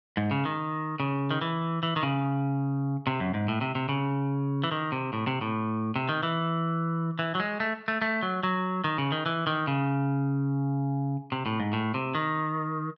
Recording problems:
none

